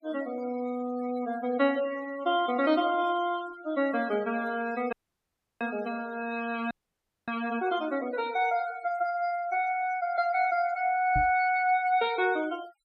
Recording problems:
noise reduction artefacts; signal-to-artefact ratio 19 dB
audio cutting out; at 5 s for 0.5 s and at 6.5 s for 0.5 s
microphone thump; at 11 s; peak -1 dB vs average level

